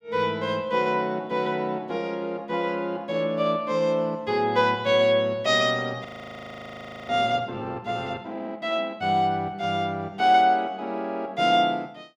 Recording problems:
frozen audio; at 6 s for 1 s

